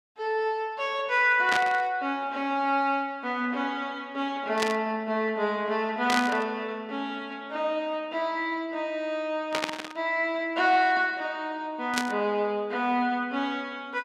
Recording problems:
burst of static; 5 times, first at 1.5 s; peak +3 dB vs average level

